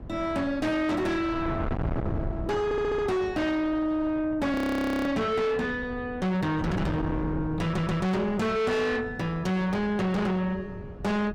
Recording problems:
distortion; soft clipping, signal-to-distortion ratio 6 dB
wind noise; below 330 Hz, SNR 9 dB
stutter; at 2.5 s and at 7.5 s
frozen audio; at 4.5 s for 0.5 s

